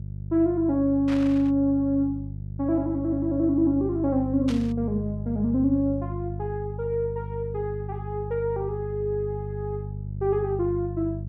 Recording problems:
mains hum; 50 Hz, harmonics up to 350 Hz, SNR 8 dB
burst of static; at 1 s and at 4.5 s; peak -8 dB vs average level

